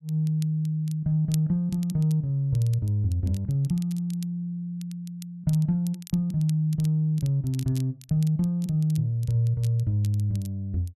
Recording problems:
crackle; vinyl, SNR 23 dB

